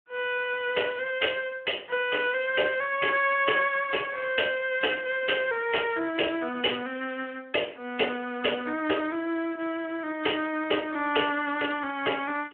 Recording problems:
phone line; 260 Hz to 3.3 kHz, Speex

